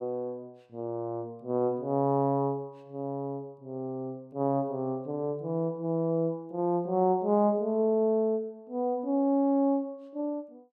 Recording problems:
none

